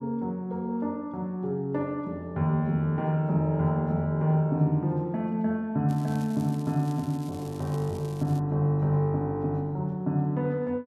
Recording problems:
crackle; from 6 to 8.5 s; loose cable, SNR 23 dB

